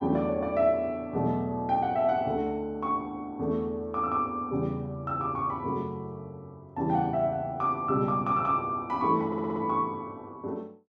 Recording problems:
audio stuttering; at 9.5 s

